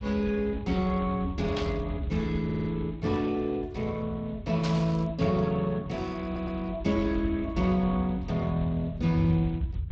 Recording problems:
lossy compression; Speex, log-spectral distance 2 dB
rumble; below 94 Hz, SNR 10 dB
static burst; at 1.5 s and at 4.5 s; peak -4 dB vs average level
stutter; at 2.5 s and at 6.5 s

